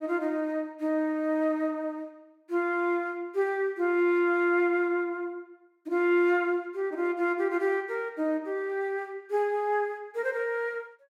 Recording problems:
none

